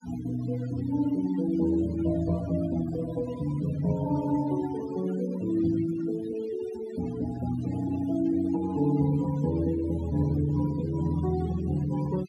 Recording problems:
noise reduction artefacts; signal-to-artefact ratio 14 dB

